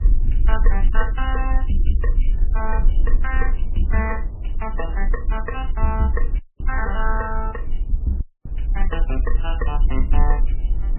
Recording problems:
lossy codec; MP2, then MP3, log-spectral distance 2 dB, nothing above 2.8 kHz
hum; 50 Hz, harmonics up to 450 Hz, SNR 24 dB
low-frequency rumble; below 42 Hz, strongest tone 22 Hz, SNR -3 dB
wind noise; below 410 Hz, SNR 20 dB
dropout; at 6.5 s and at 8 s

